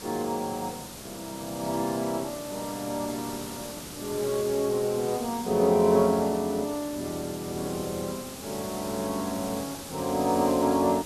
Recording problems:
hiss; SNR 11 dB

